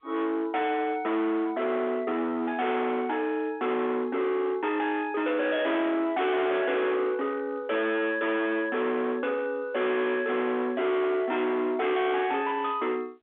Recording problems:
phone line; 260 Hz to 3.7 kHz, G.711
distortion; hard clipping, signal-to-distortion ratio 7 dB

